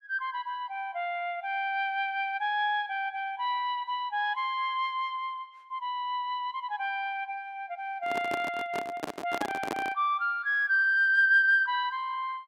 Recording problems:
microphone handling noise; from 8 to 10 s; peak 0 dB vs average level

